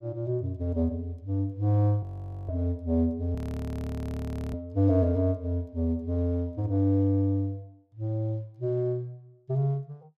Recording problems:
frozen audio; at 2 s and at 3.5 s for 1 s

